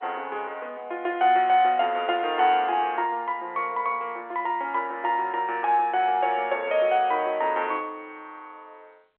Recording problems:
telephone audio; 300 Hz to 3.5 kHz, G.711

